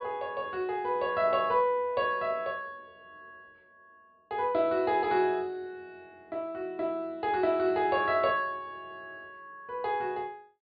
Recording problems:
treble missing; nothing above 4.8 kHz

